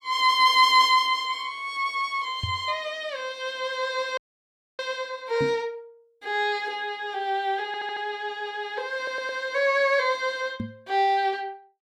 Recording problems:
microphone bump; at 2.5 s, at 5.5 s and at 11 s; peak -2 dB vs average level
audio freezing; at 4 s for 0.5 s
audio stuttering; at 7.5 s and at 9 s

